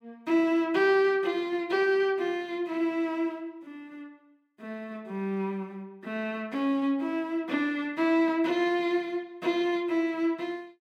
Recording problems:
none

